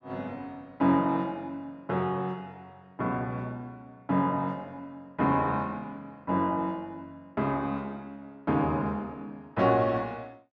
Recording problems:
none

